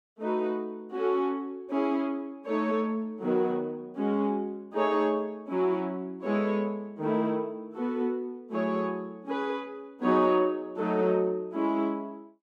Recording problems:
none

